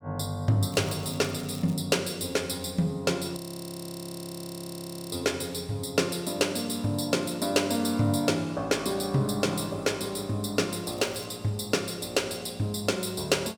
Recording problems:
crackling; from 0.5 to 1.5 s and at 11 s; loose cable, SNR 20 dB
audio freezing; at 3.5 s for 2 s

